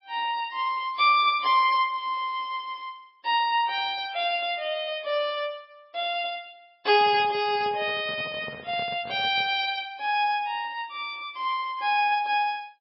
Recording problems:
codec artefacts; MP3, log-spectral distance 2 dB, nothing above 4.8 kHz
microphone handling noise; from 7 to 9.5 s; peak -11 dB vs average level

